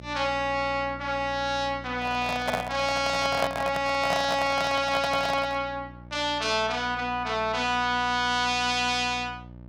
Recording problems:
electrical hum; 60 Hz, harmonics up to 900 Hz, SNR 18 dB
microphone handling noise; from 2 to 5.5 s; peak +3 dB vs average level

